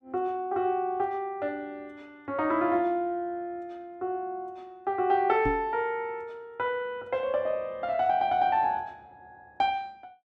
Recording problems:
microphone bump; at 5.5 s; peak 0 dB vs average level

